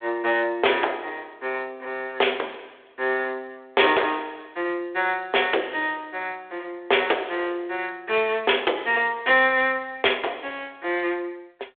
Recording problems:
phone line; 300 Hz to 3.6 kHz, G.726
distorted audio; hard clipping, signal-to-distortion ratio 11 dB

